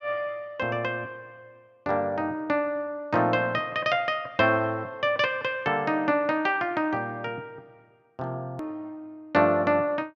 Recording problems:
click at an edit; at 8.5 s

